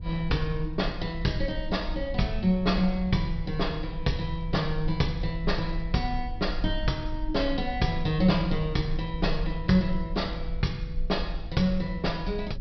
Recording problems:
treble missing; nothing above 5.5 kHz
rumble; below 50 Hz, strongest tone 20 Hz, SNR 8 dB

